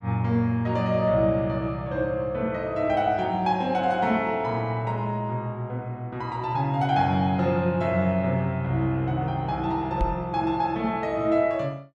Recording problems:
knock on the microphone; at 10 s; peak +1 dB vs average level

